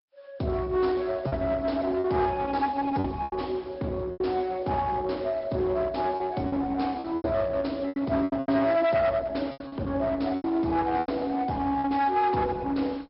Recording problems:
treble missing; nothing above 5.3 kHz
codec artefacts; Opus, log-spectral distance 3 dB
distortion; hard clipping, uneven, signal-to-distortion ratio 10 dB
packet loss; 8% of the sound replaced, filled with repeated pitch periods

